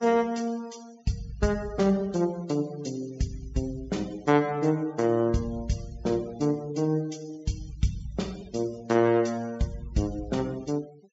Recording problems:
treble missing; nothing above 8 kHz
denoising artefacts; signal-to-artefact ratio 23 dB

